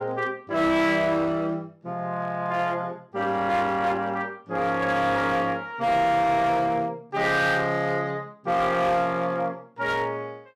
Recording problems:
distorted audio; hard clipping, uneven, signal-to-distortion ratio 11 dB

